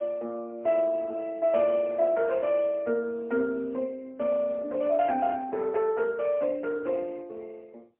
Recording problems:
phone line; 240 Hz to 3.6 kHz, AMR-NB, then MP3

